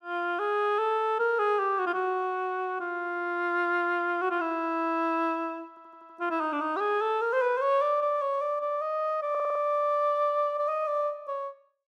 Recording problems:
audio stuttering; at 5.5 s and at 9.5 s

